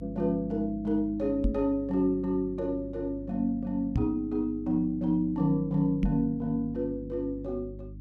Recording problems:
hum; 50 Hz, harmonics up to 300 Hz, SNR 15 dB
microphone bump; at 1.5 s, at 4 s and at 6 s; peak +4 dB vs average level

